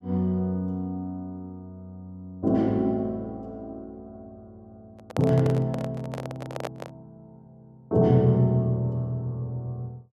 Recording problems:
handling noise; from 5 to 7 s; peak -1 dB vs average level

